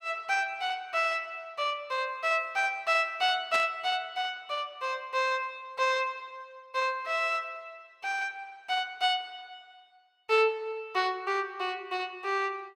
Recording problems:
static burst; at 3.5 s; peak -2 dB vs average level

